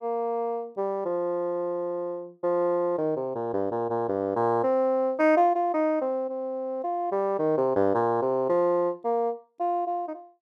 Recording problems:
none

